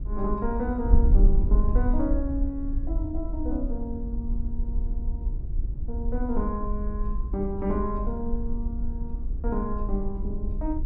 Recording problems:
wind noise; below 54 Hz, SNR -2 dB

